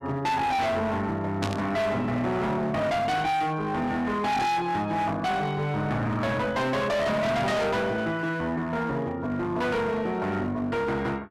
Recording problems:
distorted audio; hard clipping, uneven, signal-to-distortion ratio 6 dB
burst of static; at 1.5 s; peak -2 dB vs average level

